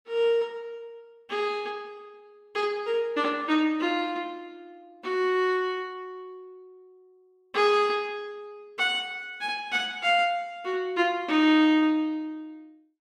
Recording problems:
none

